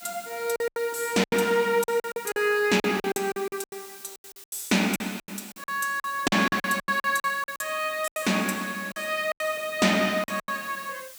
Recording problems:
background hiss; slope +2 dB per octave, SNR 17 dB
packet loss; 15% of the sound replaced, filled with silence

